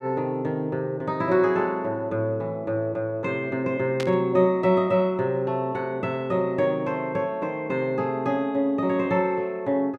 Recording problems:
burst of static; at 4 s; peak -4 dB vs average level

